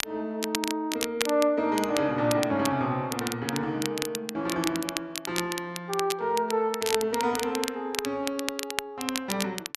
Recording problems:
crackling; vinyl, SNR 6 dB

